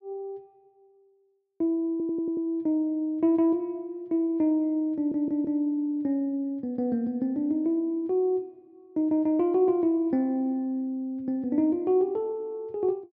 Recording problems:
audio stuttering; at 2 s and at 5 s

